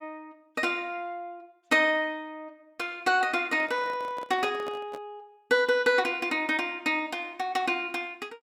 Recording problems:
handling noise; from 3.5 to 5 s; peak -9 dB vs average level

